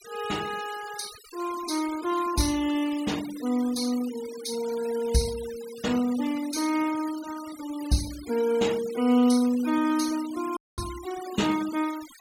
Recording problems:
noise reduction artefacts; signal-to-artefact ratio 15 dB
dropout; at 11 s

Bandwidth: 16.5 kHz